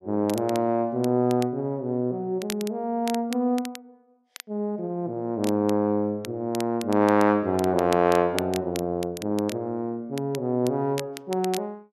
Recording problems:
crackling; vinyl, SNR 15 dB

